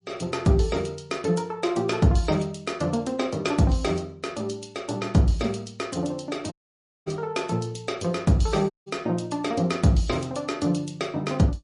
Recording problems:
lossy compression; MP3, log-spectral distance 3 dB, nothing above 10.1 kHz
dropout; at 6.5 s for 0.5 s and at 8.5 s

